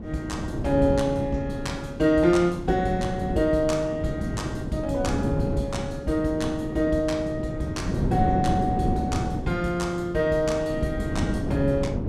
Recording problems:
wind on the microphone; below 300 Hz, SNR 5 dB

